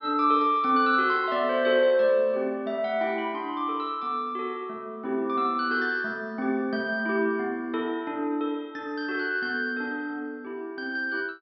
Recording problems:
treble missing; nothing above 5.5 kHz

